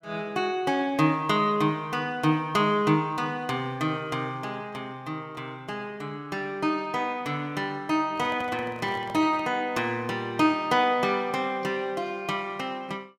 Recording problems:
handling noise; from 8 to 9.5 s; peak -11 dB vs average level

